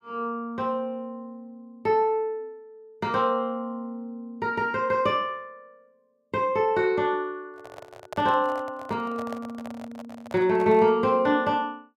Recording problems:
handling noise; from 7.5 to 11 s; peak -7 dB vs average level

